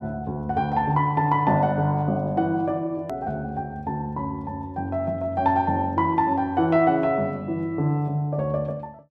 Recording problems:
edit click; at 3 s

